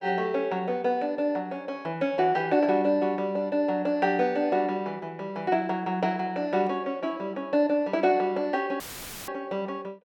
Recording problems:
audio cutting out; at 9 s; filled with static

